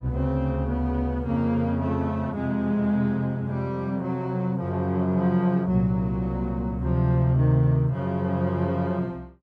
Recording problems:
none

